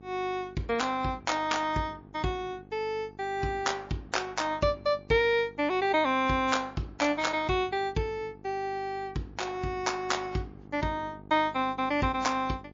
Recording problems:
lossy codec; MP3, log-spectral distance 2 dB
hum; 50 Hz, harmonics up to 1.3 kHz, SNR 22 dB

